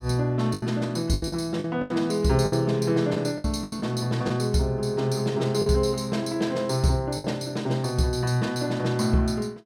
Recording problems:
lost packets; 7% of the sound replaced, filled with the last packet

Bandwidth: 16.5 kHz